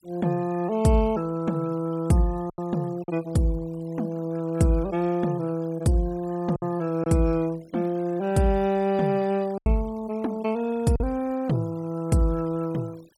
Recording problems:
denoising artefacts; signal-to-artefact ratio 24 dB
lost packets; 2% of the sound replaced, filled with silence

